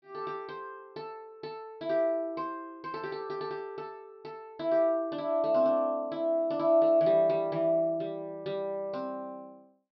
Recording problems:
treble missing; nothing above 5.5 kHz

